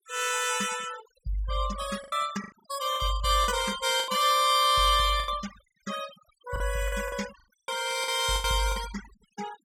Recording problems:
denoising artefacts; signal-to-artefact ratio 13 dB
lost packets; 10% of the sound replaced, filled with the last packet

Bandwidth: 16.5 kHz